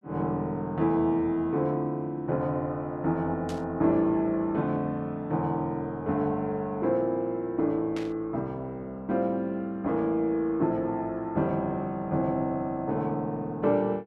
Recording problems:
static burst; at 3.5 s and at 8 s; peak -9 dB vs average level

